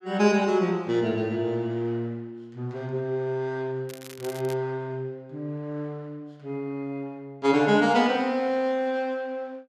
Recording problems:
crackle; at 4 s; loose cable, SNR 18 dB

